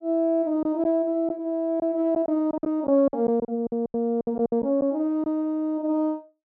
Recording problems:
treble missing; nothing above 8 kHz
lost packets; 10% of the sound replaced, filled with silence

